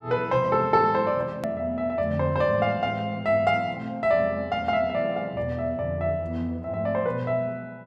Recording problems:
edit click; at 1.5 s

